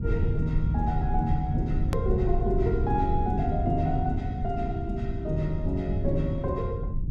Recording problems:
rumble; below 120 Hz, SNR 0 dB
click at an edit; at 2 s

